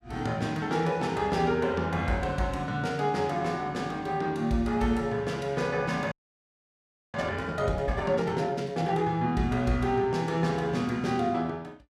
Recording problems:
audio freezing; at 6 s for 1 s

